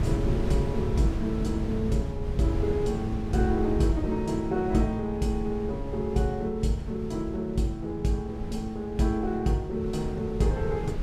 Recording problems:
wind on the microphone; below 160 Hz, SNR 5 dB

